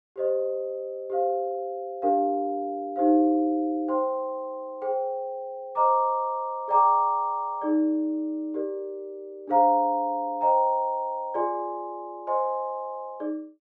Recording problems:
none

